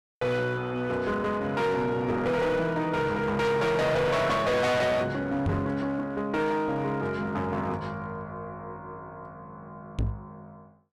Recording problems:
distortion; hard clipping, uneven, signal-to-distortion ratio 6 dB
knock on the microphone; at 5.5 s and at 10 s; peak +4 dB vs average level

